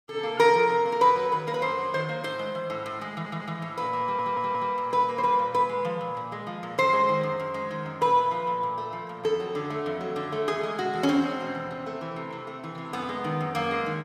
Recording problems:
audio stuttering; at 3 s and at 4 s

